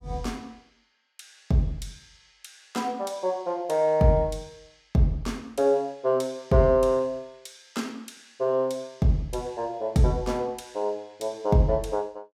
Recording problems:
none

